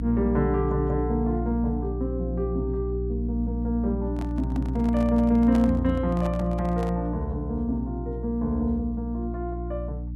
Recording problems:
electrical hum; 60 Hz, harmonics up to 300 Hz, SNR 4 dB
microphone handling noise; from 4 to 7 s; peak -4 dB vs average level

